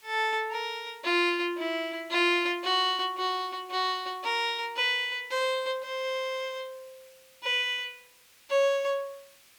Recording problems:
hiss; SNR 27 dB

